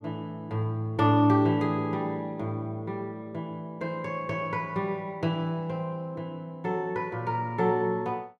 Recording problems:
none

